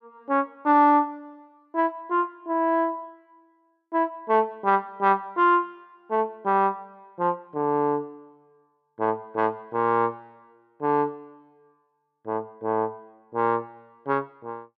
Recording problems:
none

